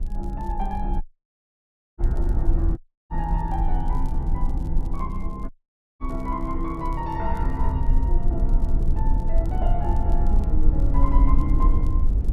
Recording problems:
low-frequency rumble; below 54 Hz, strongest tone 22 Hz, SNR -6 dB
crackling; vinyl, SNR 28 dB
audio cutting out; at 1 s for 1 s, at 3 s and at 5.5 s

